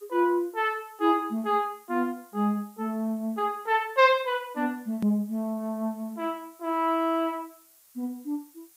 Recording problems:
background hiss; slope +1 dB per octave, SNR 27 dB
hard cut with a click; at 5 s

